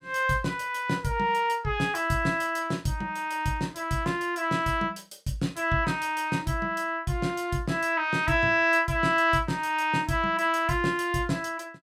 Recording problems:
none

